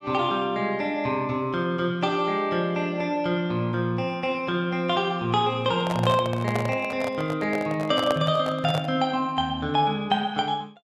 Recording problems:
handling noise; from 5.5 to 9 s; peak +1 dB vs average level

